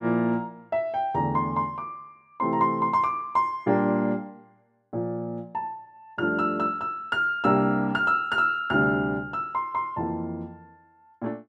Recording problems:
none

